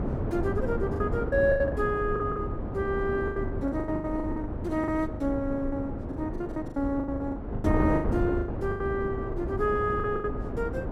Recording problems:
wind on the microphone; below 360 Hz, SNR 3 dB
packet loss; 16% of the sound replaced, filled with the last packet

